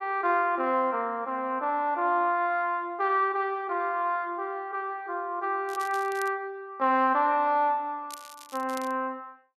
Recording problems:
crackle; at 5.5 s and at 8 s; loose cable, SNR 19 dB

